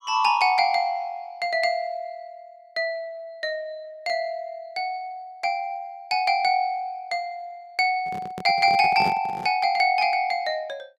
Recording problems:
microphone handling noise; from 8 to 9.5 s; peak -4 dB vs average level

